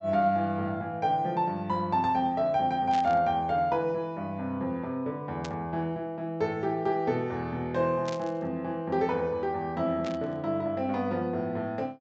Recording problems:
treble missing; nothing above 8 kHz
burst of static; 4 times, first at 3 s; peak -6 dB vs average level

